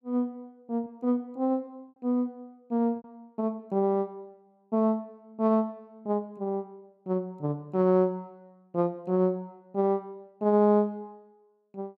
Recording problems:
packet loss; 1.1% of the sound replaced, filled with repeated pitch periods

